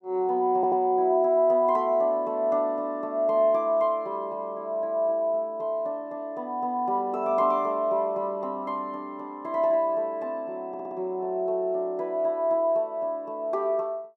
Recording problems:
stutter; at 0.5 s and at 11 s

